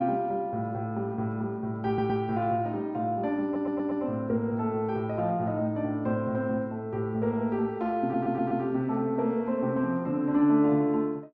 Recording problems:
stutter; at 2 s, at 3.5 s and at 8 s

